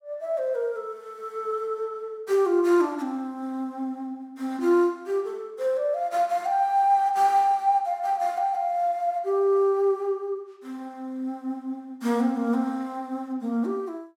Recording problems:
none

